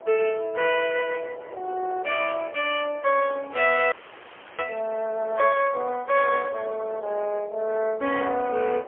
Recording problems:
telephone audio; 320 Hz to 3.3 kHz, AMR-NB, then MP3
wind noise; below 770 Hz, SNR 19 dB
frozen audio; at 4 s for 0.5 s

